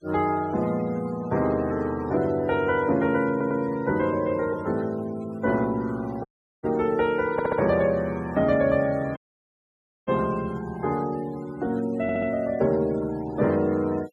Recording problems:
denoising artefacts; signal-to-artefact ratio 22 dB
audio stuttering; at 3.5 s, at 7.5 s and at 12 s
audio cutting out; at 6.5 s and at 9 s for 1 s

